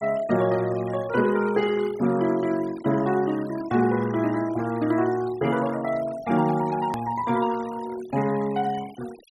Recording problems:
denoising artefacts; signal-to-artefact ratio 19 dB
click at an edit; at 7 s

